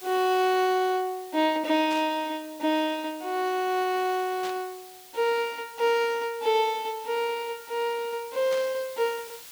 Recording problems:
hiss; slope +2 dB per octave, SNR 19 dB
burst of static; at 2 s, at 4.5 s and at 8.5 s; peak -8 dB vs average level

